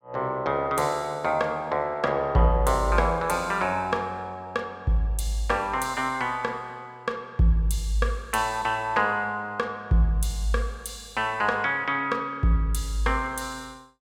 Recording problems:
none

